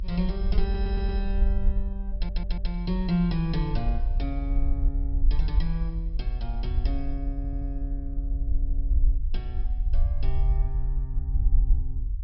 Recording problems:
low-pass filter; nothing above 5.4 kHz
low-frequency rumble; below 52 Hz, SNR -5 dB
stutter; 4 times, first at 0.5 s

